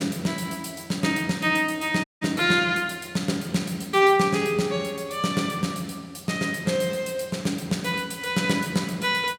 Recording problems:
dropout; at 2 s

